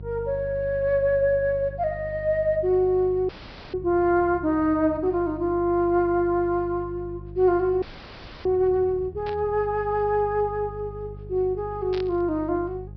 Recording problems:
treble missing; nothing above 5.5 kHz
hum; 50 Hz, harmonics up to 550 Hz, SNR 16 dB
audio freezing; at 3.5 s and at 8 s for 0.5 s
burst of static; at 9.5 s and at 12 s; peak -11 dB vs average level

